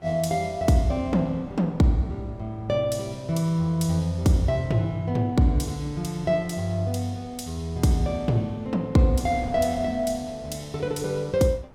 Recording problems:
wind on the microphone; below 560 Hz, SNR 24 dB

